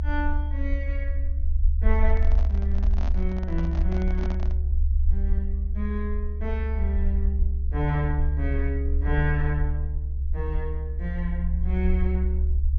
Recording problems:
treble missing; nothing above 6.7 kHz
low-frequency rumble; below 70 Hz, SNR -6 dB
handling noise; from 2 to 4.5 s; peak -3 dB vs average level

